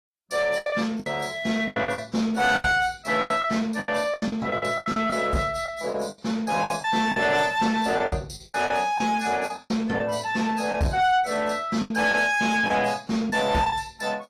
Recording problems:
codec artefacts; AAC, log-spectral distance 3 dB, nothing above 13.5 kHz
distortion; soft clipping, signal-to-distortion ratio 11 dB
lost packets; 12% of the sound replaced, filled with the last packet

